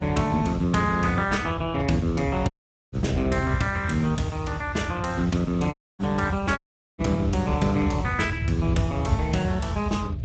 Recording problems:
lossy codec; Speex, log-spectral distance 3 dB, nothing above 7.8 kHz
electrical hum; 60 Hz, harmonics up to 660 Hz, SNR 26 dB
rumble; below 110 Hz, SNR 5 dB
audio cutting out; at 2.5 s, at 5.5 s and at 6.5 s

